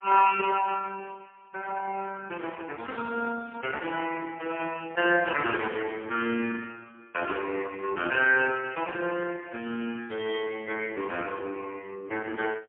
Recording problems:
telephone audio; 190 Hz to 3.1 kHz, AMR-NB, then MP3

